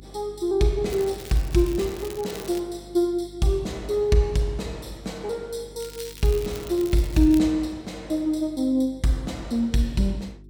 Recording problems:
hum; 50 Hz, harmonics up to 400 Hz, SNR 22 dB
crackle; from 1 to 2.5 s and from 6 to 7.5 s; loose cable, SNR 17 dB

